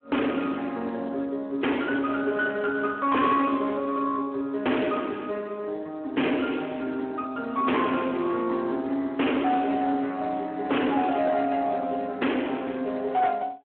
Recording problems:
phone line; 190 Hz to 3.2 kHz, Speex
distorted audio; hard clipping, uneven, signal-to-distortion ratio 6 dB

